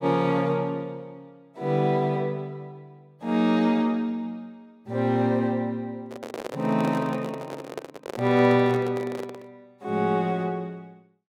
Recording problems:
microphone handling noise; from 6 to 9.5 s; peak -4 dB vs average level

